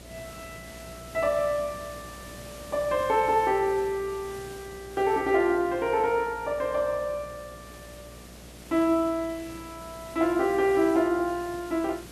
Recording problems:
hum; 60 Hz, harmonics up to 720 Hz, SNR 23 dB
hiss; slope -3 dB per octave, SNR 19 dB

